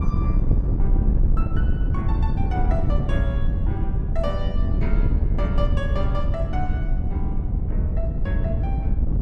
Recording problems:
wind on the microphone; below 96 Hz, SNR -10 dB

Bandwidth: 12 kHz